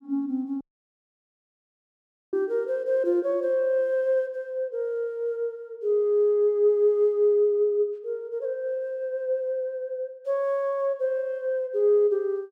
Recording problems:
audio cutting out; at 0.5 s for 1.5 s

